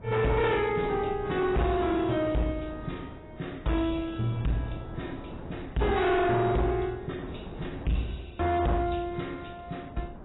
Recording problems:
lossy compression; AAC, log-spectral distance 4 dB, nothing above 3.8 kHz
distorted audio; hard clipping, uneven, signal-to-distortion ratio 8 dB
wind on the microphone; below 470 Hz, SNR 15 dB

